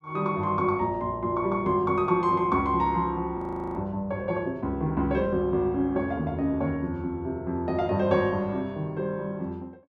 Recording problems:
audio freezing; at 3.5 s

